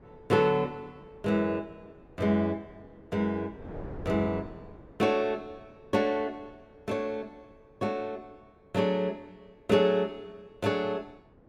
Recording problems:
wind on the microphone; below 480 Hz, SNR 20 dB

